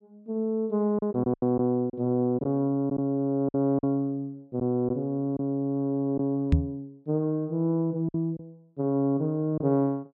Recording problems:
lost packets; 5% of the sound replaced, filled with silence
microphone bump; at 6.5 s; peak +8 dB vs average level

